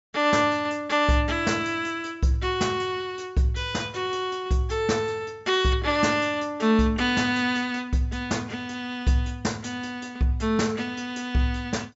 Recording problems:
low-pass filter; nothing above 8 kHz

